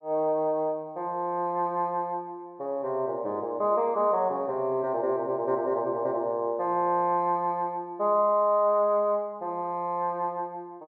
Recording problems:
none

